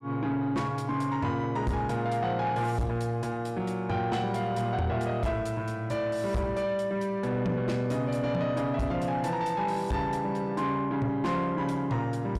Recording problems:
distorted audio; soft clipping, signal-to-distortion ratio 10 dB

